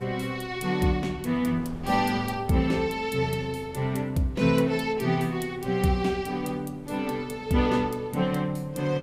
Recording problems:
wind on the microphone; below 390 Hz, SNR 21 dB

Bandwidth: 15.5 kHz